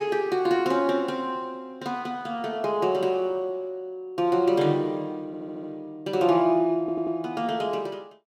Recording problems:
audio stuttering; at 5.5 s and at 7 s

